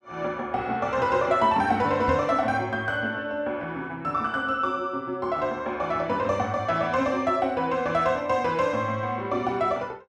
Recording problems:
knock on the microphone; at 2 s; peak -2 dB vs average level

